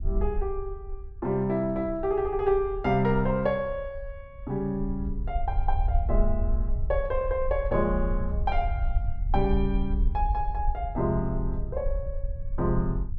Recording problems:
rumble; below 58 Hz, SNR 3 dB

